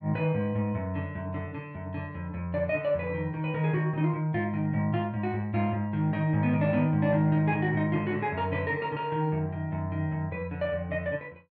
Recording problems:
none

